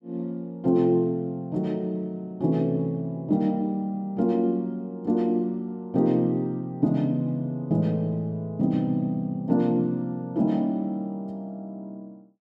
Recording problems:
none

